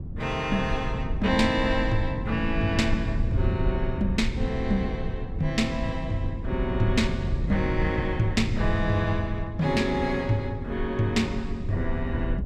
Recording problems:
low-frequency rumble; below 130 Hz, SNR 4 dB

